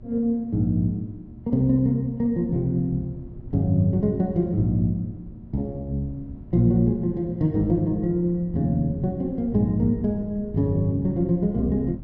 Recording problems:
hum; 60 Hz, harmonics up to 960 Hz, SNR 28 dB
wind on the microphone; below 160 Hz, SNR 18 dB

